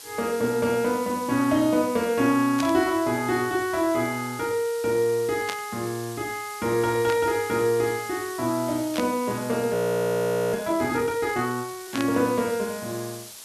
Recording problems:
background hiss; slope +1 dB per octave, SNR 15 dB
static burst; 5 times, first at 2.5 s; peak -3 dB vs average level
audio freezing; at 9.5 s for 1 s

